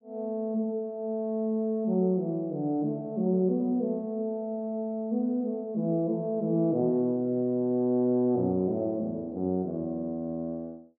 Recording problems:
none

